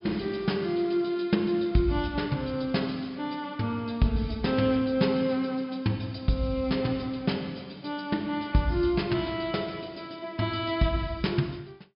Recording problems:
treble missing; nothing above 5.5 kHz

